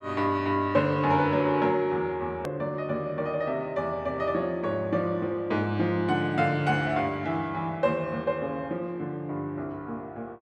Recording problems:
edit click; at 2.5 s

